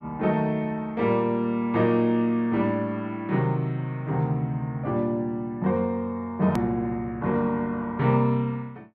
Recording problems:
edit click; at 6.5 s

